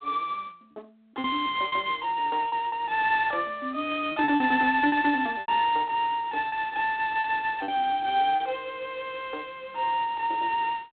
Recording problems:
telephone audio; 240 Hz to 3.5 kHz, G.726
lost packets; 5% of the sound replaced, filled with repeated pitch periods

